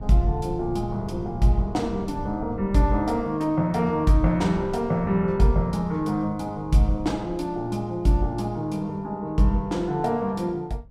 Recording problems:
wind on the microphone; below 150 Hz, SNR 15 dB

